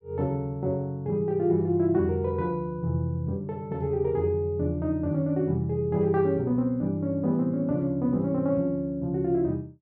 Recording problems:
none

